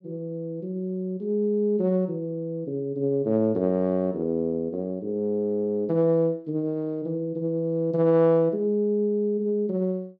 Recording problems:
none

